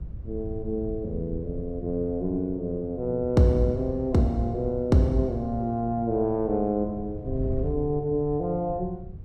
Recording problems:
wind noise; below 100 Hz, SNR 12 dB

